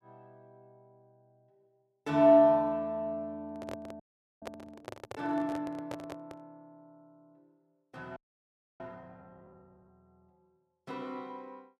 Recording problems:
microphone handling noise; from 3.5 to 6.5 s; peak -8 dB vs average level
audio freezing; at 4 s and at 8 s for 0.5 s

